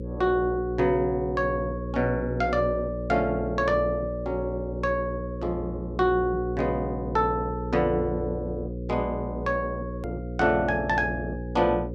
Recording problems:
electrical hum; 60 Hz, harmonics up to 540 Hz, SNR 7 dB
edit click; at 10 s

